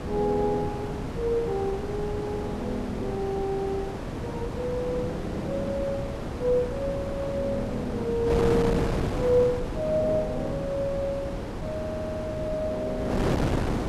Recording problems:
wind on the microphone; below 550 Hz, SNR 2 dB
stutter; at 12 s

